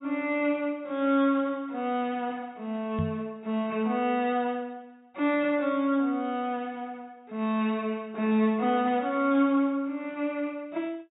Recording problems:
treble missing; nothing above 4 kHz
microphone bump; at 3 s; peak +1 dB vs average level

